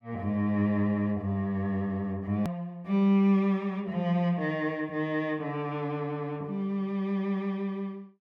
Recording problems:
hard cut with a click; at 2.5 s

